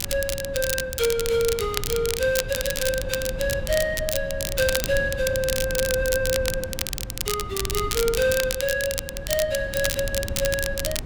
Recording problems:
wind on the microphone; below 140 Hz, SNR 10 dB
crackling; vinyl, SNR 4 dB

